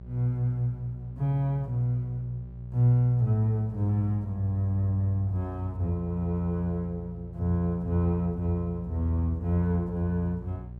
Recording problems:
electrical hum; 60 Hz, harmonics up to 600 Hz, SNR 14 dB

